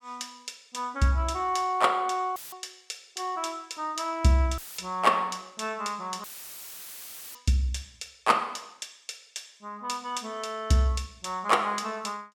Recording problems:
audio cutting out; at 2.5 s, at 4.5 s and at 6 s for 1 s; filled with static

